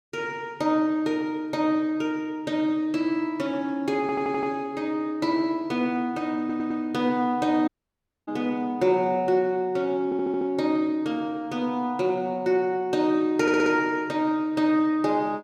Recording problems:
stutter; 4 times, first at 4 s
dropout; at 7.5 s for 0.5 s

